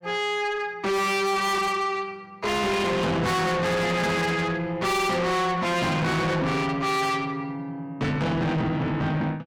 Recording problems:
distortion; soft clipping, signal-to-distortion ratio 6 dB

